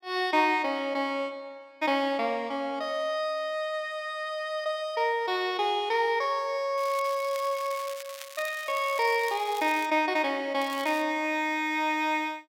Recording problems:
crackling; from 7 to 10 s and at 11 s; loose cable, SNR 16 dB

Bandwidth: 16.5 kHz